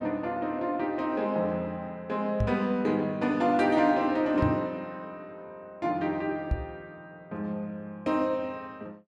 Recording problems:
knock on the microphone; at 2.5 s, at 4.5 s and at 6.5 s; peak +4 dB vs average level

